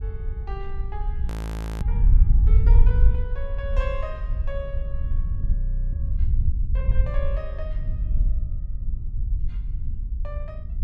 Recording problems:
wind on the microphone; below 62 Hz, SNR -13 dB
frozen audio; at 1.5 s for 0.5 s and at 5.5 s

